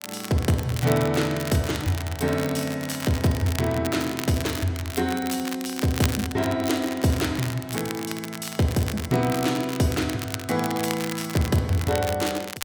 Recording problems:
crackle; vinyl, SNR 10 dB

